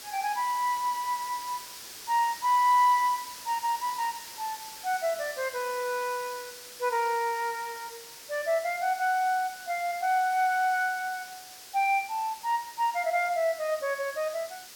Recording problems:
background hiss; slope +1 dB per octave, SNR 14 dB

